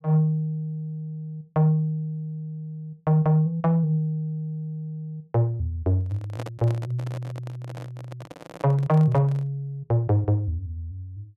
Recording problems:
microphone handling noise; from 6 to 9.5 s; peak -6 dB vs average level

